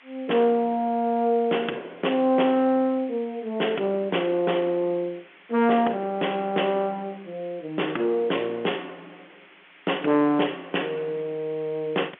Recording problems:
phone line; 260 Hz to 3.4 kHz, G.711
distorted audio; soft clipping, signal-to-distortion ratio 12 dB
background hiss; SNR 25 dB

